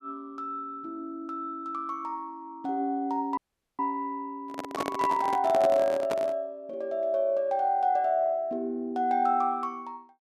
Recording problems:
dropout; at 3.5 s
microphone handling noise; from 4.5 to 6.5 s; peak +1 dB vs average level

